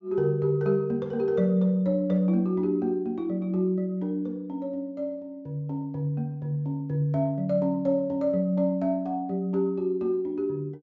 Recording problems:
treble missing; nothing above 8 kHz

